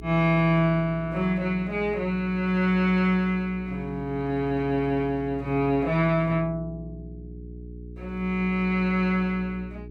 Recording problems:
hum; 60 Hz, harmonics up to 420 Hz, SNR 16 dB

